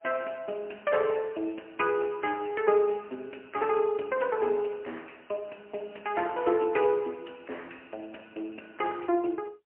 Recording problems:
telephone audio; 220 Hz to 3.1 kHz, AMR-NB, then MP3

